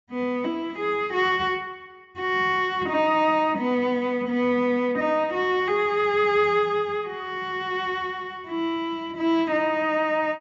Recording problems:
low-pass filter; nothing above 8 kHz

